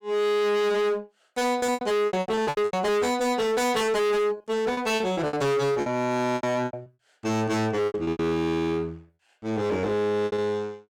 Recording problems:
distorted audio; hard clipping, uneven, signal-to-distortion ratio 6 dB
lost packets; 14% of the sound replaced, filled with repeated pitch periods

